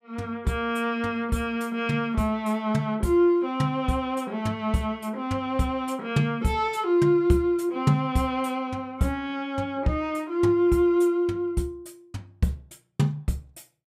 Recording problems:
none

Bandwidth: 15.5 kHz